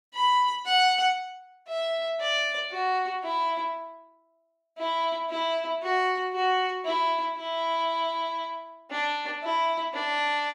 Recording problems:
none

